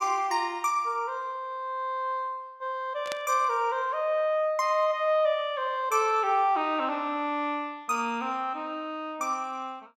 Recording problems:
static burst; at 3 s; peak -4 dB vs average level

